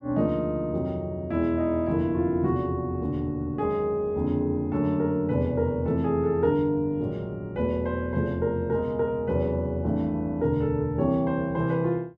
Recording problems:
none

